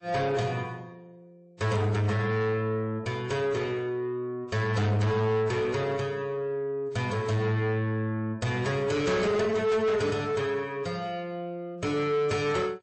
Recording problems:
codec artefacts; MP3, then AAC, log-spectral distance 2 dB, nothing above 8.2 kHz
distorted audio; soft clipping, signal-to-distortion ratio 8 dB

